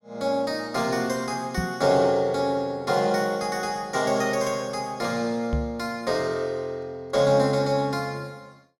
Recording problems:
microphone bump; at 1.5 s and at 5.5 s; peak +2 dB vs average level

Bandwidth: 16.5 kHz